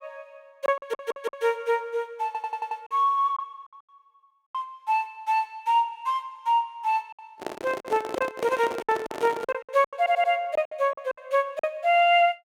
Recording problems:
lost packets; 9% of the sound replaced, filled with silence
stutter; at 1 s, at 2.5 s and at 10 s
handling noise; from 7.5 to 9.5 s; peak -2 dB vs average level

